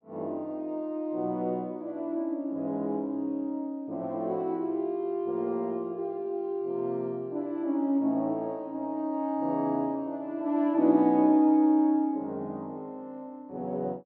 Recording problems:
none

